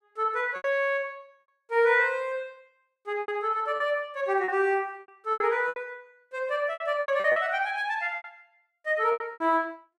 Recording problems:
packet loss; 12% of the sound replaced, filled with repeated pitch periods

